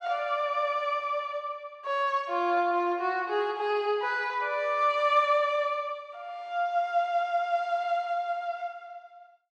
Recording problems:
none

